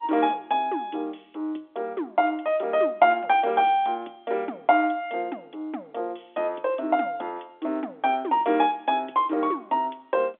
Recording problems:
telephone audio; 260 Hz to 3.6 kHz, G.711

